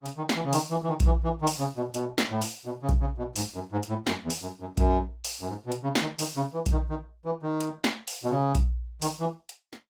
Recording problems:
lossy codec; Opus, log-spectral distance 4 dB, nothing above 19 kHz

